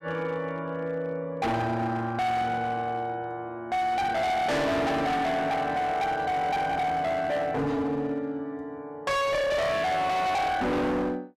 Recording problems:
distortion; hard clipping, signal-to-distortion ratio 6 dB

